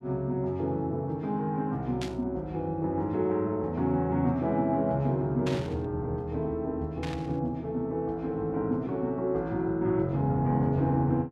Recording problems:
burst of static; at 2 s, at 5.5 s and at 7 s; peak -4 dB vs average level

